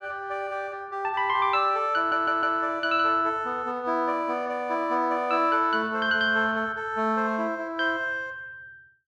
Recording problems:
audio stuttering; at 2 s

